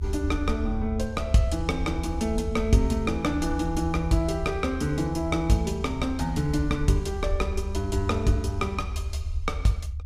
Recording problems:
low-frequency rumble; below 78 Hz, SNR 6 dB

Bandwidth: 15.5 kHz